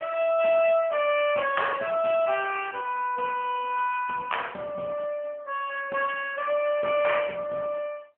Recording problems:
phone line; 260 Hz to 3.3 kHz, AMR-NB

